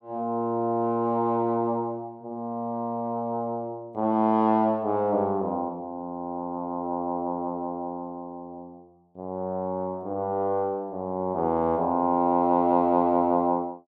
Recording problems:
none

